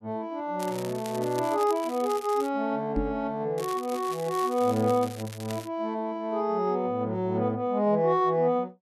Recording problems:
crackling; from 0.5 to 2.5 s and from 3.5 to 5.5 s; loose cable, SNR 16 dB
knock on the microphone; at 3 s; peak +1 dB vs average level

